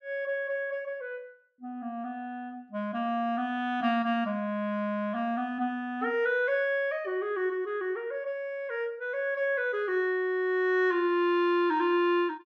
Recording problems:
none

